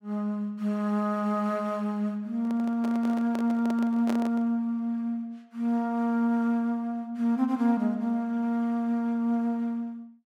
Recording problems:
microphone handling noise; from 2.5 to 4.5 s; peak -2 dB vs average level

